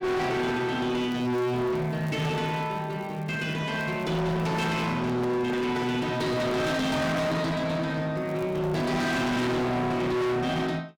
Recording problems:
distorted audio; hard clipping, uneven, signal-to-distortion ratio 5 dB
crackling; from 1 to 3.5 s, at 4 s and at 8 s; loose cable, SNR 30 dB
handling noise; from 4.5 to 7.5 s; peak -3 dB vs average level

